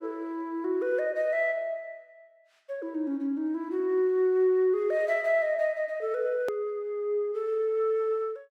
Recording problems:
edit click; at 6.5 s

